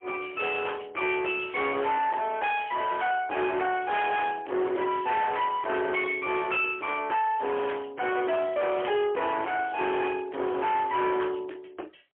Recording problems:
phone line; 300 Hz to 3.3 kHz, AMR-NB, then MP3
distortion; hard clipping, uneven, signal-to-distortion ratio 6 dB

